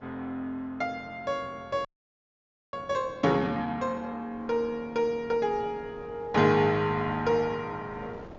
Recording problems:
low-pass filter; nothing above 7.3 kHz
wind on the microphone; below 700 Hz, SNR 21 dB
audio freezing; at 2 s for 1 s

